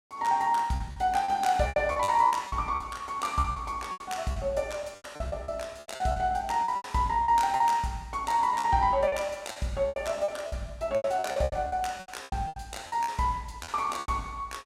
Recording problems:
packet loss; 15% of the sound replaced, filled with repeated pitch periods

